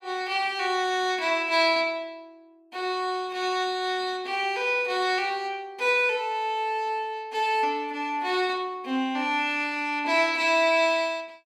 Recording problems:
none

